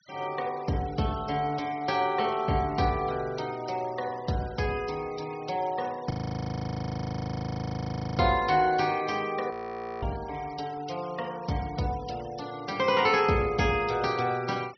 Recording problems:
treble missing; nothing above 6 kHz
denoising artefacts; signal-to-artefact ratio 20 dB
audio freezing; at 6 s for 2 s and at 9.5 s for 0.5 s

